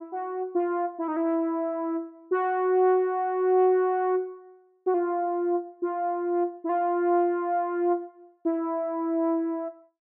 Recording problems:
none

